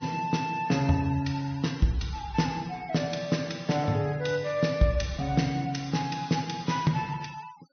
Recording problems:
treble cut off; nothing above 6.1 kHz
denoising artefacts; signal-to-artefact ratio 22 dB

